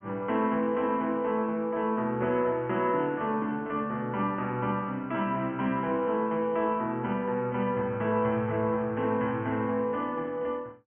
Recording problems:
low-pass filter; nothing above 3.3 kHz

